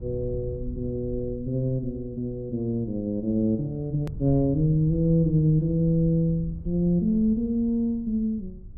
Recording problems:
low-frequency rumble; below 94 Hz, SNR 15 dB
click at an edit; at 4 s

